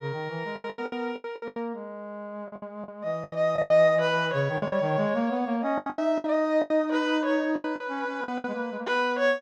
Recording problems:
lost packets; 14% of the sound replaced, filled with the last packet

